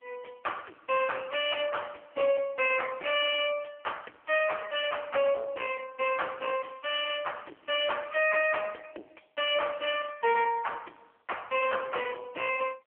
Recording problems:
telephone audio; 240 Hz to 3.3 kHz, AMR-NB
distortion; soft clipping, signal-to-distortion ratio 7 dB

